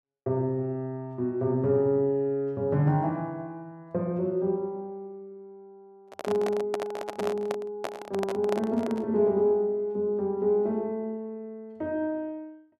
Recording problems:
handling noise; from 6 to 9 s; peak -1 dB vs average level

